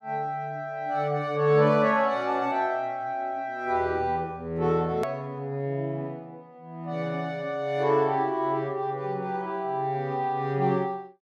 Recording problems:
click at an edit; at 5 s

